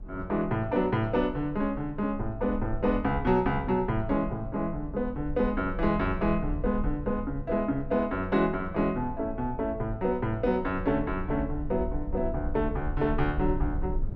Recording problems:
rumble; below 62 Hz, SNR 10 dB

